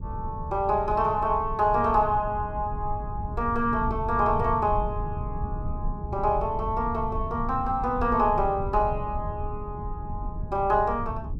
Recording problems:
rumble; below 120 Hz, SNR 9 dB

